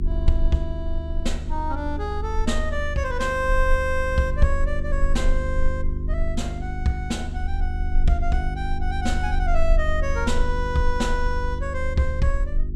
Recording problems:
hum; 50 Hz, harmonics up to 400 Hz, SNR 7 dB
low-frequency rumble; below 44 Hz, strongest tone 20 Hz, SNR 2 dB

